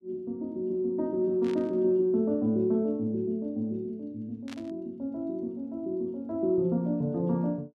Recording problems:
static burst; at 1.5 s and at 4.5 s; peak -11 dB vs average level

